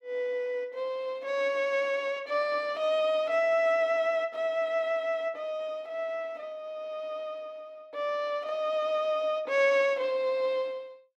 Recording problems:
none

